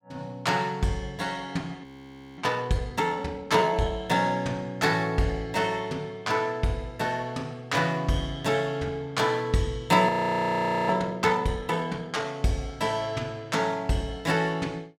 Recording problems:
frozen audio; at 2 s for 0.5 s and at 10 s for 1 s

